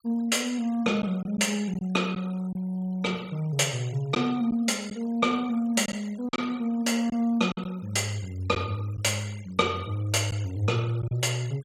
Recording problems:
denoising artefacts; signal-to-artefact ratio 23 dB
packet loss; 3% of the sound replaced, filled with silence

